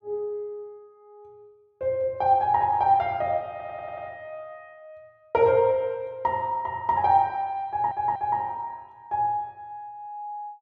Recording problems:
audio stuttering; at 3.5 s and at 7.5 s

